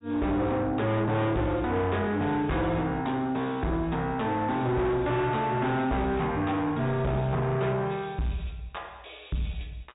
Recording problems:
low-pass filter; nothing above 4 kHz
distortion; soft clipping, signal-to-distortion ratio 6 dB

